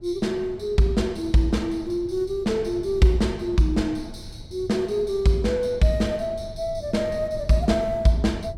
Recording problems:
rumble; below 120 Hz, SNR 17 dB

